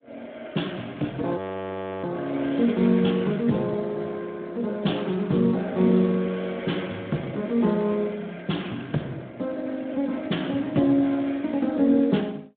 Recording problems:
telephone audio; 130 Hz to 3.6 kHz, Speex
frozen audio; at 1.5 s for 0.5 s

